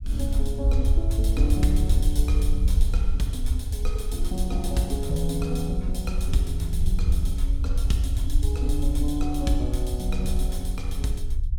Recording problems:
low-frequency rumble; below 64 Hz, SNR -4 dB

